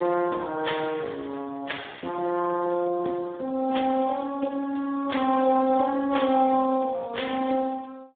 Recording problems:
phone line; 190 Hz to 3.6 kHz, Speex

